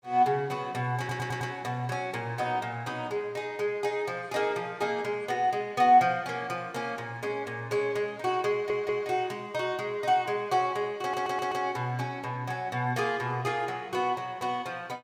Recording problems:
audio stuttering; at 1 s, at 8.5 s and at 11 s

